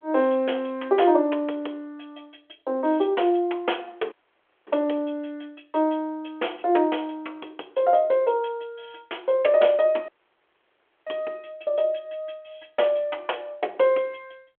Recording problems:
phone line; 280 Hz to 3.4 kHz, G.726
dropout; at 4 s for 0.5 s and at 10 s for 1 s

